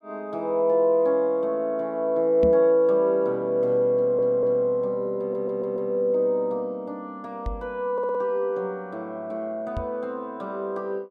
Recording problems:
microphone thump; at 2.5 s, at 7.5 s and at 10 s; peak -2 dB vs average level
stutter; at 4 s, at 5 s and at 8 s

